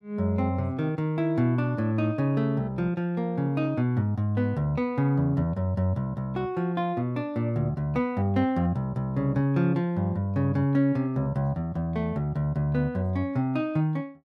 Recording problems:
none

